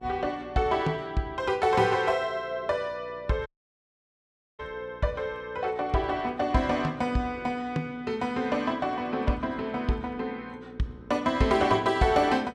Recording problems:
electrical hum; 60 Hz, harmonics up to 1.1 kHz, SNR 24 dB
dropout; at 3.5 s for 1 s

